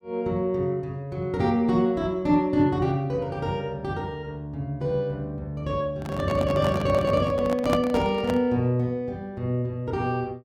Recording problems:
microphone handling noise; from 6 to 8.5 s; peak +3 dB vs average level

